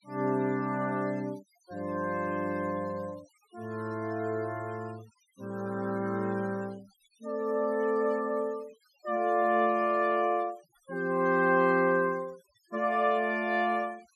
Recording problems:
noise reduction artefacts; signal-to-artefact ratio 27 dB

